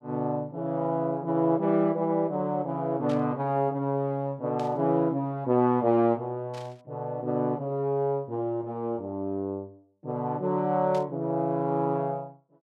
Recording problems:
burst of static; 4 times, first at 3 s; peak -13 dB vs average level

